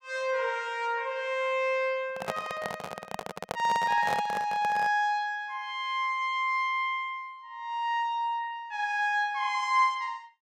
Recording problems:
handling noise; from 2 to 5 s; peak 0 dB vs average level

